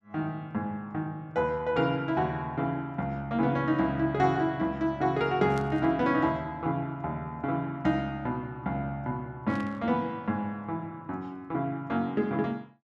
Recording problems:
burst of static; at 5.5 s and at 9.5 s; peak -12 dB vs average level

